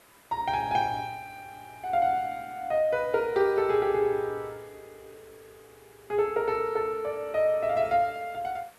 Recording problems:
hiss; SNR 28 dB

